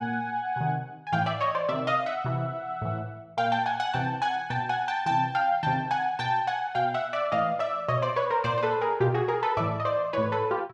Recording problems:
none

